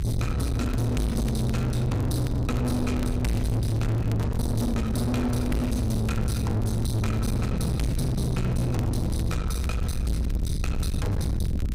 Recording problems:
distorted audio; soft clipping, signal-to-distortion ratio 6 dB
rumble; below 180 Hz, SNR 2 dB
crackling; vinyl, SNR 24 dB

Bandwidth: 15.5 kHz